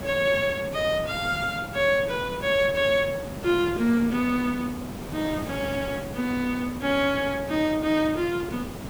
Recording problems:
hiss; slope -6 dB per octave, SNR 11 dB

